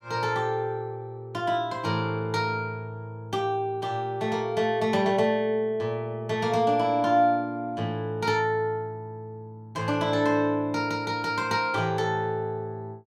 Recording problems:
none

